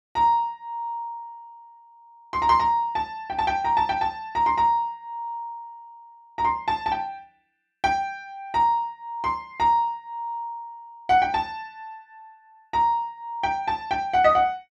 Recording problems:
none

